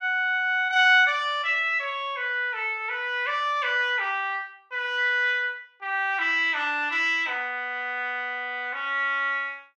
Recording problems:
none

